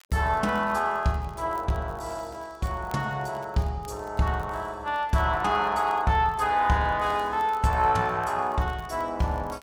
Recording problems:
crackling; vinyl, SNR 30 dB

